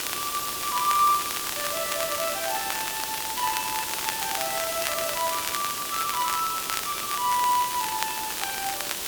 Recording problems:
hiss; slope -1 dB per octave, SNR 1 dB
crackling; vinyl, SNR 6 dB

